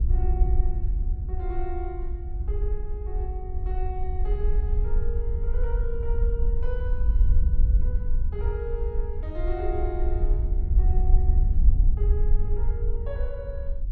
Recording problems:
wind noise; below 58 Hz, SNR -10 dB

